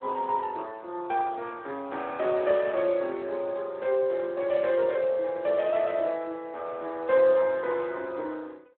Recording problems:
telephone audio; 240 Hz to 3.8 kHz, Speex

